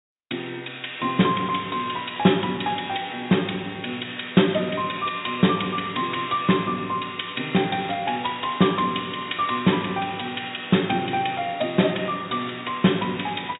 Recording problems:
treble missing; nothing above 4 kHz

